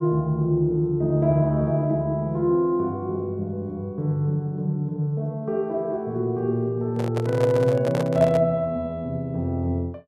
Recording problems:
microphone handling noise; from 7 to 8.5 s; peak -2 dB vs average level

